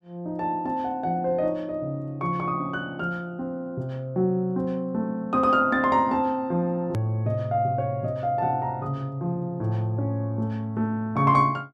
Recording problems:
edit click; at 7 s

